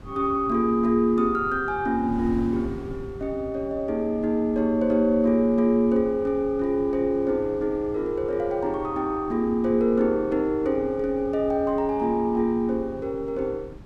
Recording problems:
wind on the microphone; below 230 Hz, SNR 18 dB

